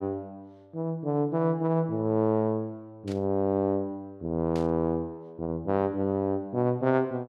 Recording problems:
static burst; at 3 s and at 4.5 s; peak -13 dB vs average level

